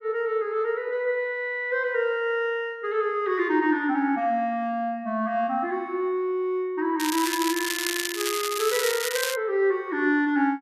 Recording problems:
crackle; from 7 to 9.5 s; loose cable, SNR 3 dB

